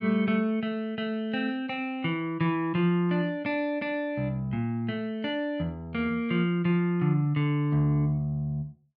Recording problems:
none

